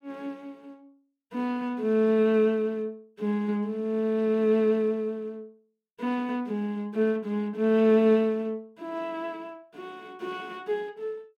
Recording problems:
none

